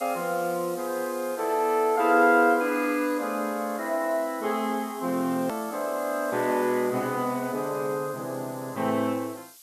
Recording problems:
hiss; SNR 18 dB
hard cut with a click; at 5.5 s

